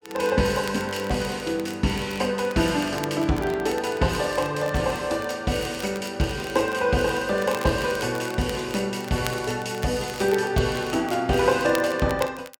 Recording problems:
crackle; vinyl, SNR 17 dB

